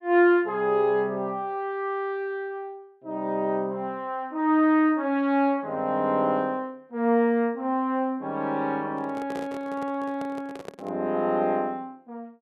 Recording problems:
handling noise; from 9 to 11 s; peak -7 dB vs average level

